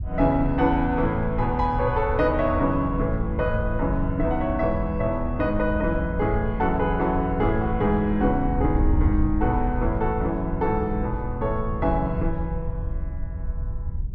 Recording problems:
wind noise; below 76 Hz, SNR 6 dB

